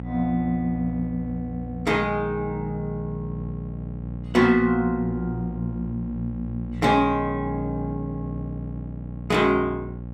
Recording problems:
hum; 60 Hz, harmonics up to 600 Hz, SNR 9 dB

